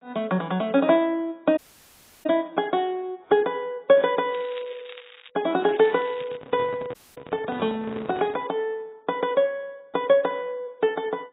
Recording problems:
codec artefacts; AAC, log-spectral distance 4 dB, nothing above 3.1 kHz
audio cutting out; at 1.5 s for 0.5 s and at 7 s
crackle; at 4.5 s and at 5.5 s; loose cable, SNR 21 dB
handling noise; from 6 to 8.5 s; peak -8 dB vs average level

